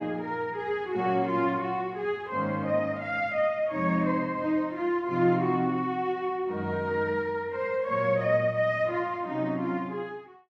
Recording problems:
none

